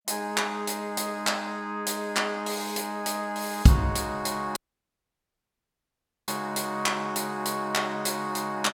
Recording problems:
dropout; at 4.5 s for 1.5 s

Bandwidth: 17 kHz